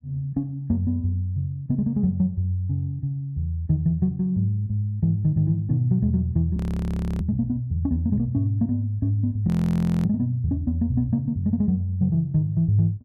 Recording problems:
frozen audio; at 6.5 s for 0.5 s and at 9.5 s for 0.5 s

